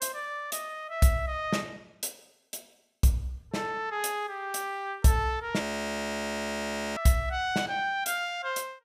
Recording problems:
audio freezing; at 5.5 s for 1.5 s

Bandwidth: 15.5 kHz